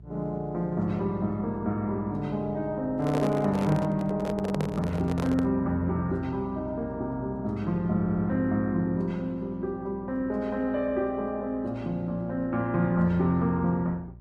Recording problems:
codec artefacts; Opus, log-spectral distance 2 dB
hum; 60 Hz, harmonics up to 420 Hz, SNR 19 dB
handling noise; from 3 to 5.5 s; peak -1 dB vs average level
audio stuttering; at 8 s

